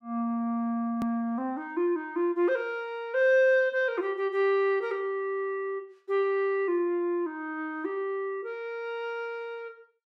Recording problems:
hard cut with a click; at 1 s

